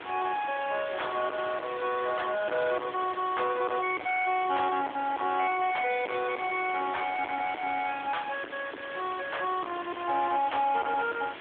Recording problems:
phone line; 260 Hz to 3.5 kHz, AMR-NB
distortion; soft clipping, signal-to-distortion ratio 3 dB
hiss; SNR 10 dB

